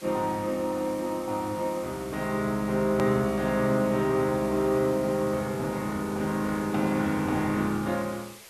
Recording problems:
hiss; slope -1 dB per octave, SNR 19 dB
hard cut with a click; at 3 s

